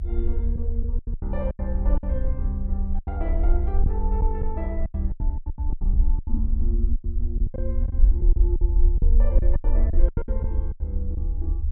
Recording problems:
rumble; below 54 Hz, SNR -10 dB
wind on the microphone; below 72 Hz, SNR 5 dB
lost packets; 14% of the sound replaced, filled with silence

